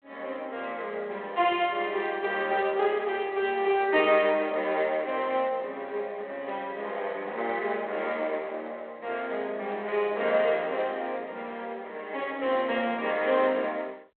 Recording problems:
phone line; 340 Hz to 3.5 kHz, G.726

